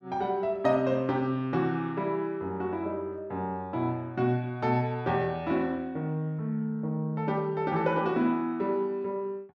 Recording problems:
none

